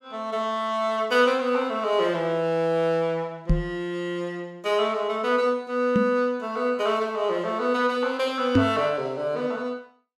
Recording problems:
microphone bump; at 3.5 s, at 6 s and at 8.5 s; peak +8 dB vs average level

